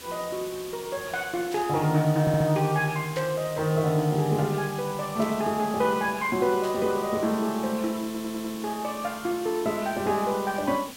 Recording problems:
background hiss; SNR 15 dB
static burst; 4 times, first at 1.5 s; peak -9 dB vs average level
audio stuttering; at 2 s and at 8 s

